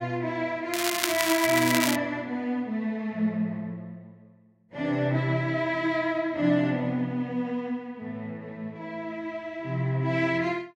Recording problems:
crackle; from 0.5 to 2 s; loose cable, SNR 1 dB

